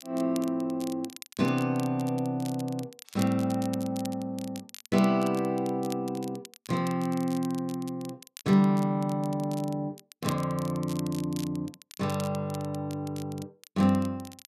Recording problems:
crackling; vinyl, SNR 17 dB

